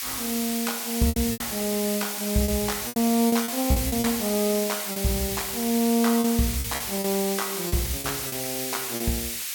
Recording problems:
background hiss; SNR 2 dB
lost packets; 9% of the sound replaced, filled with repeated pitch periods

